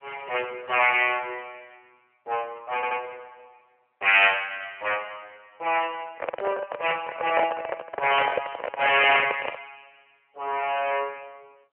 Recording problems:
telephone audio; 340 Hz to 3 kHz, AMR-NB
audio stuttering; at 3 s
handling noise; from 6 to 9.5 s; peak +1 dB vs average level

